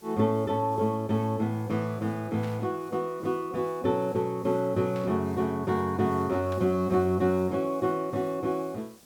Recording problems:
hiss; SNR 27 dB
static burst; at 2.5 s, at 5 s and at 6.5 s; peak -14 dB vs average level

